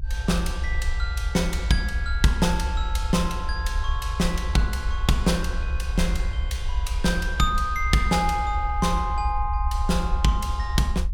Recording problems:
rumble; below 68 Hz, SNR 3 dB

